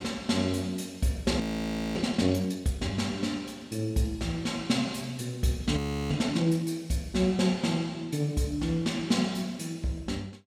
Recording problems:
audio freezing; at 1.5 s for 0.5 s and at 6 s

